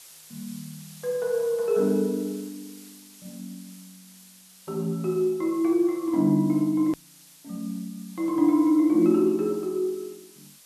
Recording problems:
hiss; slope +2 dB per octave, SNR 23 dB
edit click; at 7 s

